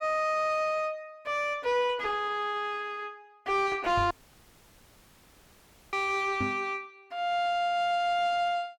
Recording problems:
distortion; soft clipping, signal-to-distortion ratio 11 dB
microphone bump; at 4 s and at 6.5 s; peak +1 dB vs average level
audio cutting out; at 4 s for 2 s

